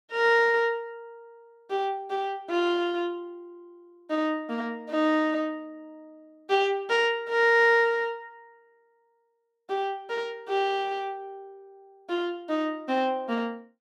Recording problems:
none

